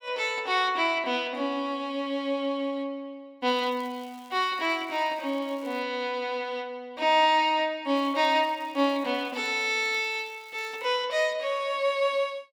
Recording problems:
crackle; from 3.5 to 6 s and from 8 to 11 s; loose cable, SNR 27 dB

